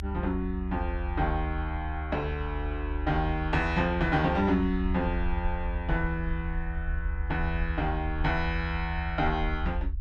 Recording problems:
rumble; below 70 Hz, SNR 4 dB

